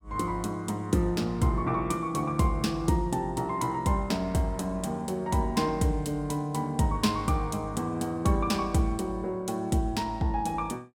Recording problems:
none

